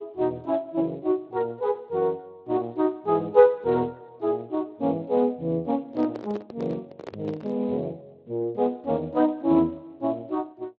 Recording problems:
codec artefacts; Speex, log-spectral distance 2 dB, nothing above 4 kHz
microphone handling noise; from 6 to 7.5 s; peak -6 dB vs average level

